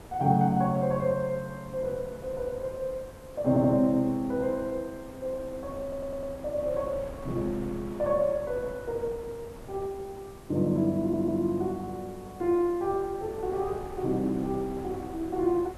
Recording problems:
hiss; slope -2 dB per octave, SNR 27 dB
wind noise; below 590 Hz, SNR 17 dB
audio stuttering; at 3.5 s, at 6 s and at 11 s

